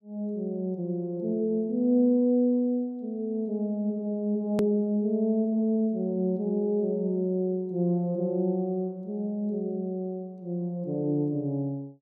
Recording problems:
click at an edit; at 4.5 s

